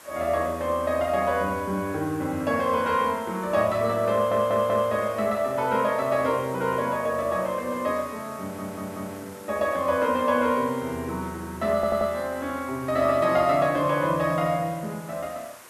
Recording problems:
background hiss; SNR 20 dB
stutter; at 4 s, at 8.5 s and at 12 s

